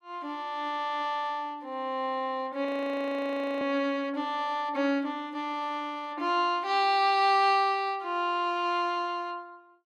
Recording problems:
audio freezing; at 2.5 s for 1 s

